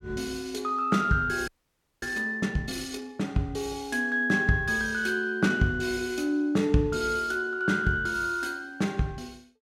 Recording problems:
audio freezing; at 1.5 s for 0.5 s

